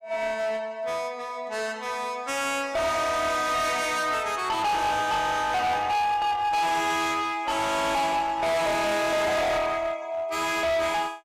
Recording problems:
distorted audio; hard clipping, uneven, signal-to-distortion ratio 7 dB

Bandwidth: 15.5 kHz